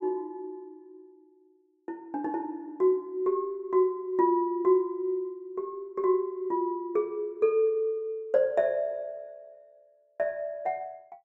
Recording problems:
none

